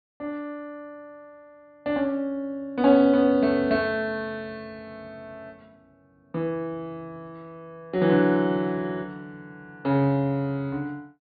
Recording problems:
treble missing; nothing above 4.7 kHz

